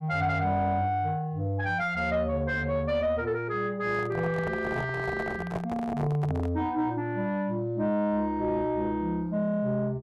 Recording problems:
distorted audio; soft clipping, signal-to-distortion ratio 11 dB
handling noise; from 4 to 6.5 s; peak 0 dB vs average level

